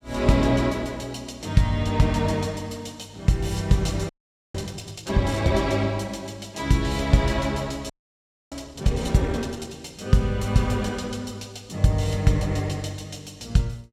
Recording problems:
audio freezing; at 4 s and at 8 s for 0.5 s

